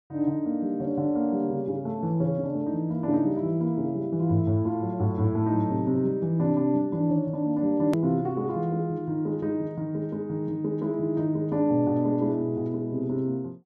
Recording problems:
edit click; at 8 s

